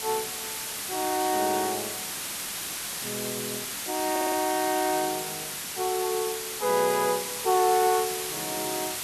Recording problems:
hiss; slope +1 dB per octave, SNR 3 dB
audio stuttering; at 4 s

